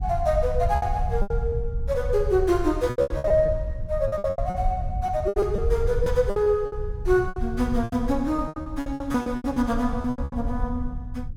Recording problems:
low-frequency rumble; below 80 Hz, SNR 6 dB
packet loss; 15% of the sound replaced, filled with repeated pitch periods

